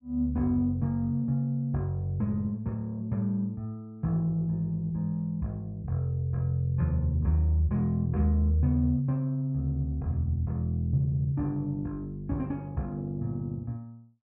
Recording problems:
none

